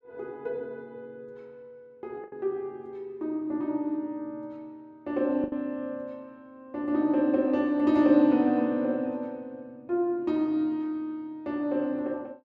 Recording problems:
packet loss; 1.3% of the sound replaced, filled with the last packet

